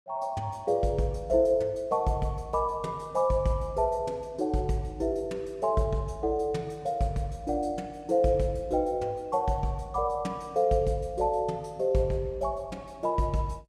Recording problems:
none

